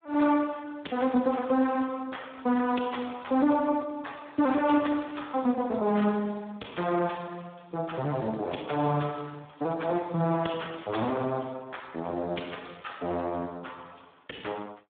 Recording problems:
phone line; 170 Hz to 3.6 kHz, Speex

